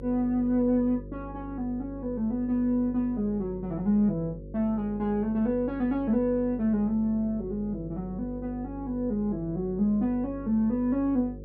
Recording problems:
hum; 50 Hz, harmonics up to 550 Hz, SNR 14 dB

